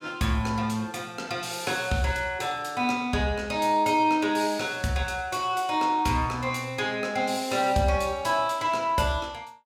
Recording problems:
none

